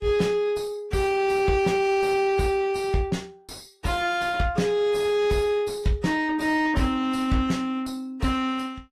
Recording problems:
lossy codec; AAC, log-spectral distance 2 dB, nothing above 15.1 kHz
distorted audio; soft clipping, signal-to-distortion ratio 8 dB

